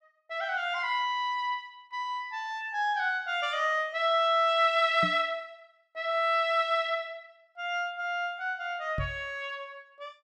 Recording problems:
microphone thump; at 5 s and at 9 s; peak -2 dB vs average level

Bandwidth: 12.5 kHz